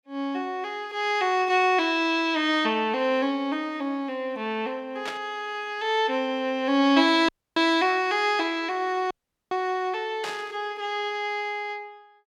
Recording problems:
static burst; at 5 s and at 10 s; peak -4 dB vs average level
dropout; at 7.5 s and at 9 s

